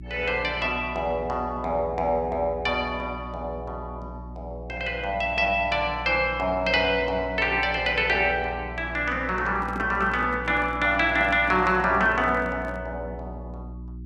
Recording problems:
hum; 60 Hz, harmonics up to 360 Hz, SNR 15 dB
handling noise; from 9.5 to 13 s; peak -9 dB vs average level

